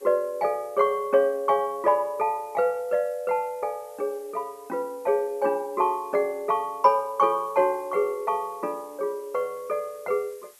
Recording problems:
hiss; slope 0 dB per octave, SNR 27 dB

